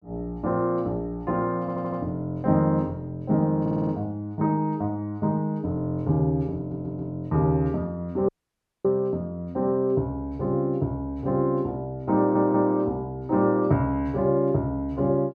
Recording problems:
stutter; 4 times, first at 1.5 s
dropout; at 8.5 s for 0.5 s

